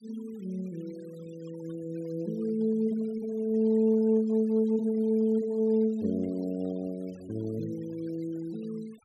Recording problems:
denoising artefacts; signal-to-artefact ratio 27 dB

